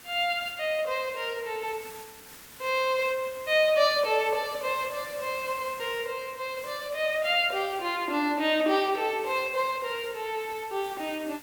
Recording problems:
background hiss; slope -1 dB per octave, SNR 18 dB

